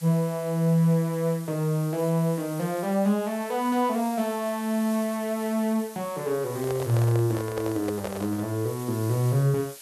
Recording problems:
background hiss; slope +2 dB per octave, SNR 17 dB
microphone handling noise; from 6.5 to 8.5 s; peak -4 dB vs average level

